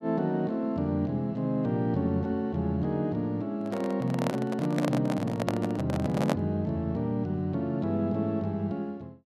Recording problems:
microphone handling noise; from 3.5 to 6.5 s; peak +3 dB vs average level

